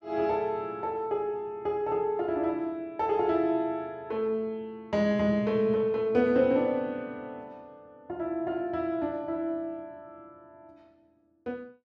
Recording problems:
none

